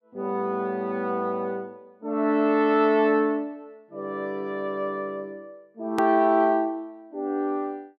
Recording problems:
edit click; at 6 s

